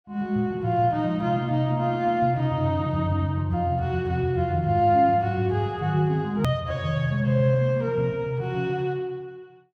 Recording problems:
edit click; at 6.5 s

